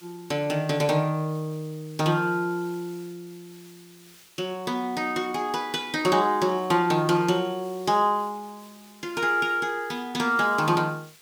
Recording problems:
hiss; slope +1 dB per octave, SNR 25 dB

